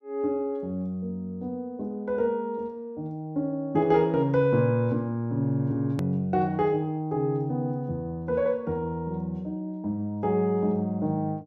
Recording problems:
hard cut with a click; at 6 s

